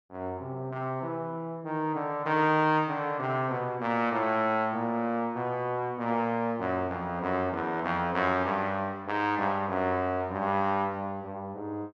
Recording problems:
none

